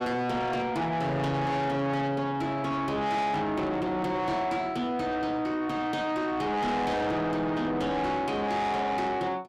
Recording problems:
distorted audio; soft clipping, signal-to-distortion ratio 8 dB

